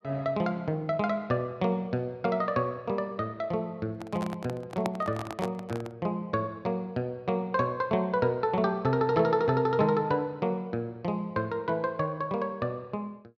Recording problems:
handling noise; from 4 to 6 s; peak +1 dB vs average level

